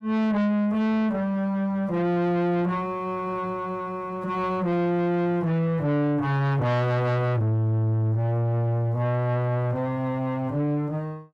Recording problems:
distortion; soft clipping, signal-to-distortion ratio 8 dB

